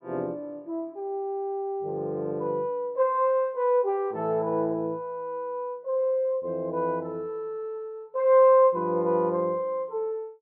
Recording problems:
low-pass filter; nothing above 4.5 kHz

